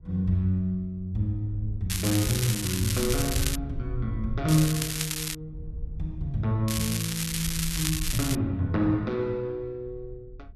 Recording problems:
wind noise; below 74 Hz, SNR 12 dB
crackle; from 2 to 3.5 s, at 4.5 s and from 6.5 to 8.5 s; loose cable, SNR 2 dB

